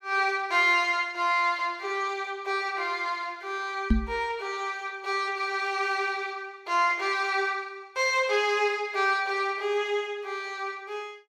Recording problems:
microphone bump; at 4 s; peak +8 dB vs average level

